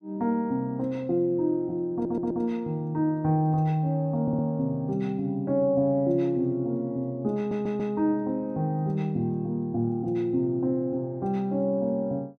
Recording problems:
audio stuttering; at 2 s, at 4 s and at 7.5 s

